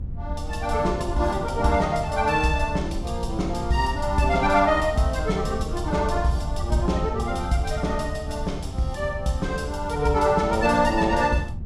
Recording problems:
low-frequency rumble; below 94 Hz, SNR 8 dB

